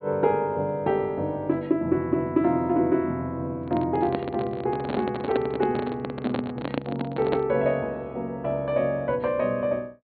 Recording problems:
low-pass filter; nothing above 4.3 kHz
handling noise; from 3.5 to 7.5 s; peak +2 dB vs average level

